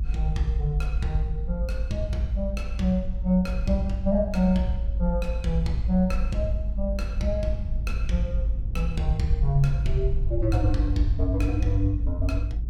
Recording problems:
low-frequency rumble; below 56 Hz, strongest tone 54 Hz, SNR 1 dB

